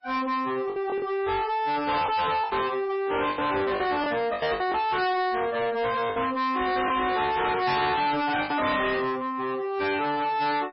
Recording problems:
lossy codec; MP3, log-spectral distance 4 dB, nothing above 5.2 kHz
distortion; soft clipping, signal-to-distortion ratio 6 dB
packet loss; 6% of the sound replaced, filled with the last packet

